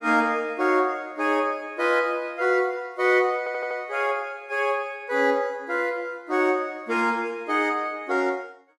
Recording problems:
audio stuttering; at 3.5 s

